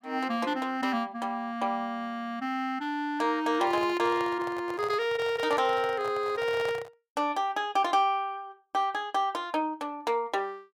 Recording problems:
microphone handling noise; from 3.5 to 7 s; peak -6 dB vs average level

